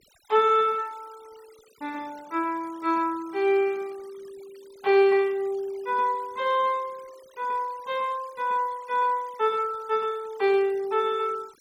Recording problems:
denoising artefacts; signal-to-artefact ratio 26 dB

